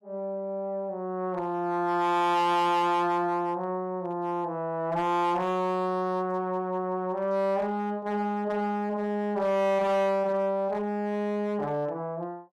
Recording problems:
distorted audio; hard clipping, uneven, signal-to-distortion ratio 11 dB

